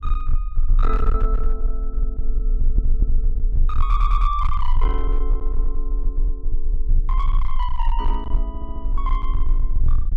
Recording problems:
distortion; hard clipping, signal-to-distortion ratio 10 dB
low-frequency rumble; below 38 Hz, strongest tone 20 Hz, SNR -7 dB
audio stuttering; at 2.5 s, at 4 s and at 8.5 s

